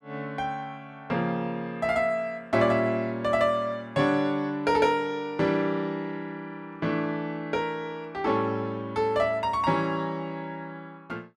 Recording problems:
none

